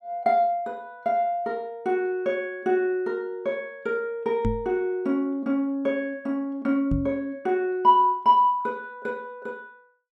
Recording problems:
knock on the microphone; at 4.5 s and at 7 s; peak +2 dB vs average level

